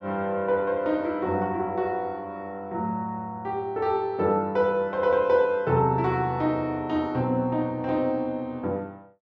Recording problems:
none

